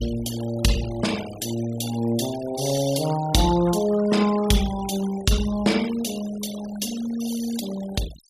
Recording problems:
denoising artefacts; signal-to-artefact ratio 14 dB

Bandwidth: 15 kHz